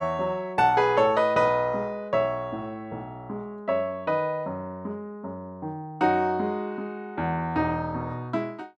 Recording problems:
none

